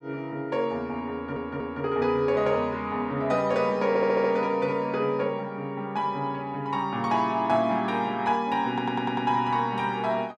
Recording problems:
audio stuttering; at 1 s, at 4 s and at 8.5 s

